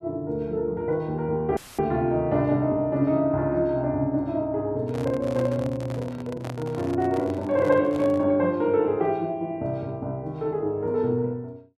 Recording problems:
dropout; at 1.5 s; filled with static
handling noise; from 5 to 8.5 s; peak -7 dB vs average level

